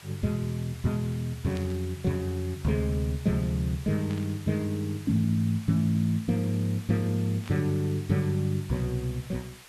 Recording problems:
background hiss; SNR 19 dB
static burst; at 1.5 s, at 4 s and at 7.5 s; peak -11 dB vs average level

